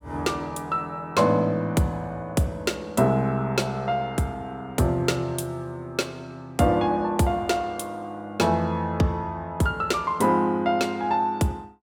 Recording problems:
none

